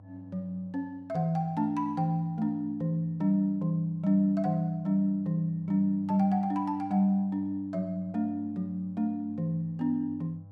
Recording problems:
hum; 50 Hz, harmonics up to 800 Hz, SNR 23 dB

